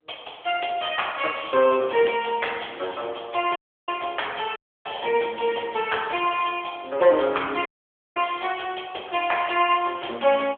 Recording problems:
phone line; 300 Hz to 3.4 kHz, AMR-NB
audio cutting out; at 3.5 s, at 4.5 s and at 7.5 s for 0.5 s

